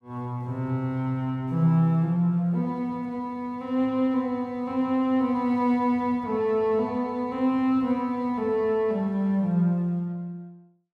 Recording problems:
none

